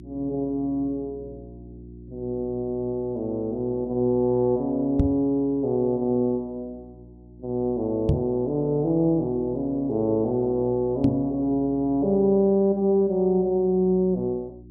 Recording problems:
mains hum; 60 Hz, harmonics up to 360 Hz, SNR 21 dB
microphone thump; at 5 s, at 8 s and at 11 s; peak +5 dB vs average level

